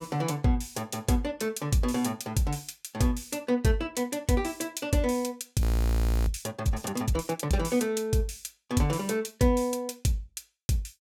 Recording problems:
frozen audio; at 5.5 s for 0.5 s

